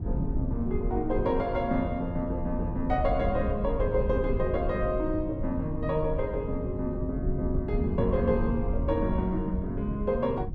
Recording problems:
rumble; below 110 Hz, SNR 4 dB

